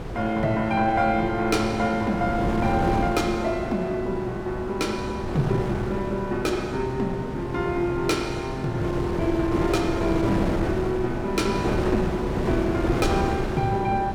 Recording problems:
wind noise; below 500 Hz, SNR 5 dB

